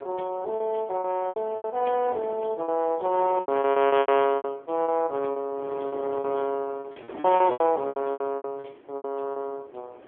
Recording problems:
telephone audio; 280 Hz to 3.3 kHz, AMR-NB
wind noise; below 750 Hz, SNR 19 dB
lost packets; 15% of the sound replaced, filled with repeated pitch periods

